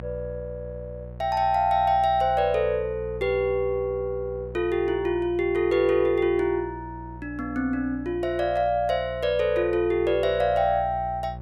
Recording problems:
hum; 60 Hz, harmonics up to 720 Hz, SNR 15 dB

